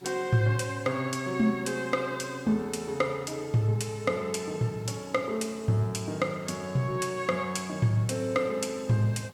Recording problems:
hiss; slope -2 dB per octave, SNR 29 dB

